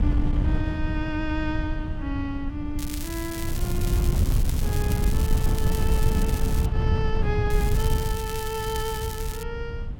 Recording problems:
wind on the microphone; below 110 Hz, SNR -5 dB
crackle; from 3 to 6.5 s and from 7.5 to 9.5 s; loose cable, SNR 5 dB

